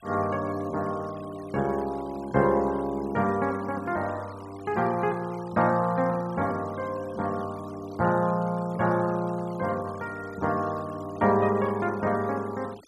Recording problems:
denoising artefacts; signal-to-artefact ratio 22 dB

